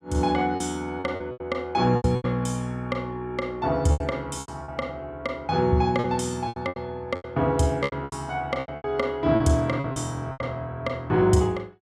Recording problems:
lost packets; 12% of the sound replaced, filled with repeated pitch periods

